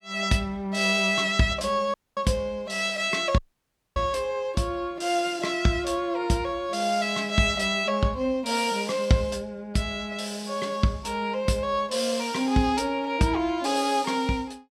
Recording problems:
dropout; at 2 s and at 3.5 s for 0.5 s

